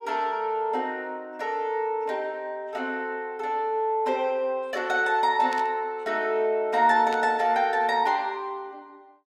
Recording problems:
burst of static; at 5.5 s and at 7 s; peak -8 dB vs average level

